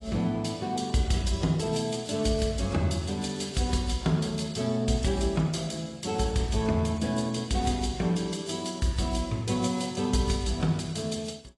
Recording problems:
lossy compression; AAC, log-spectral distance 4 dB, nothing above 11 kHz

